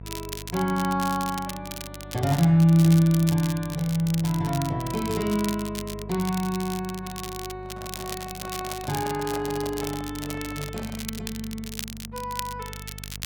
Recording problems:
hum; 50 Hz, harmonics up to 500 Hz, SNR 16 dB
crackle; vinyl, SNR 12 dB
handling noise; from 7.5 to 11 s; peak -10 dB vs average level

